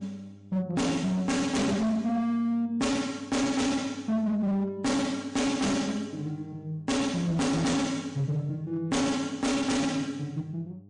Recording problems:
lossy codec; MP3, log-spectral distance 2 dB, nothing above 8.7 kHz
distorted audio; hard clipping, signal-to-distortion ratio 6 dB
hum; 50 Hz, harmonics up to 700 Hz, SNR 23 dB

